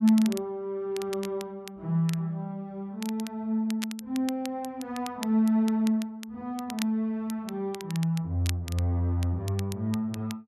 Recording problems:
crackling; vinyl, SNR 15 dB

